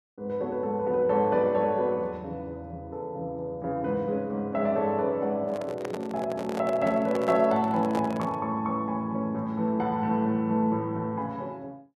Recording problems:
microphone handling noise; from 5.5 to 8.5 s; peak -3 dB vs average level

